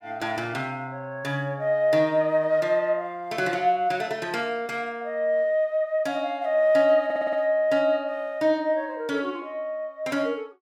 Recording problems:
audio stuttering; at 7 s

